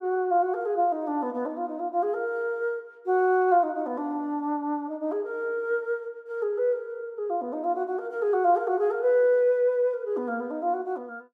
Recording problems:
none

